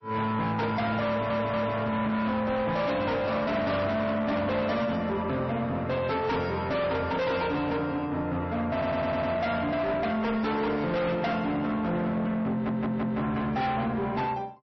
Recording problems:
lossy compression; MP3, log-spectral distance 2 dB, nothing above 5.5 kHz
distorted audio; soft clipping, signal-to-distortion ratio 8 dB
audio stuttering; at 1 s, at 8.5 s and at 13 s

